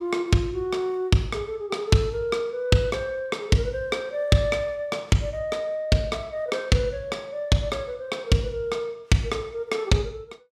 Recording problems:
none

